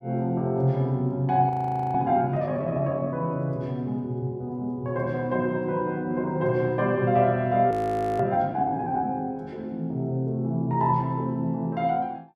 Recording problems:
audio freezing; at 1.5 s and at 7.5 s

